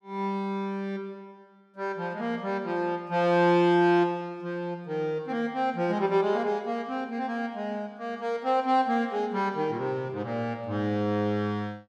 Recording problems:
none

